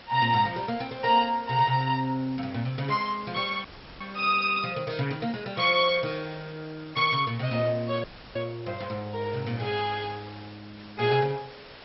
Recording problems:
lossy codec; MP2, log-spectral distance 9 dB, nothing above 4.6 kHz
background hiss; slope -2 dB per octave, SNR 20 dB
audio cutting out; at 3.5 s and at 8 s

